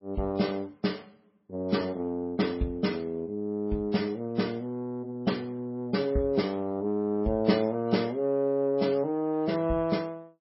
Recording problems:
lossy codec; MP3, log-spectral distance 2 dB, nothing above 5.5 kHz

